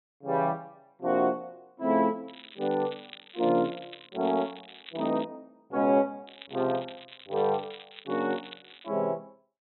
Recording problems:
low-pass filter; nothing above 3.8 kHz
crackling; from 2.5 to 5 s and from 6.5 to 9 s; loose cable, SNR 18 dB

